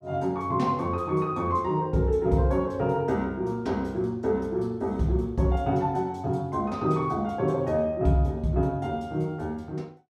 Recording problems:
none

